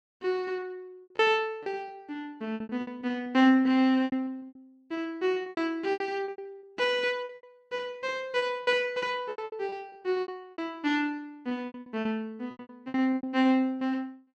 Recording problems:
lost packets; 17% of the sound replaced, filled with repeated pitch periods

